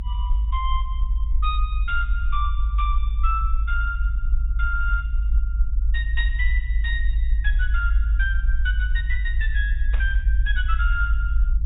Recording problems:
treble missing; nothing above 4 kHz
rumble; below 54 Hz, strongest tone 52 Hz, SNR -5 dB
burst of static; at 10 s; peak -5 dB vs average level

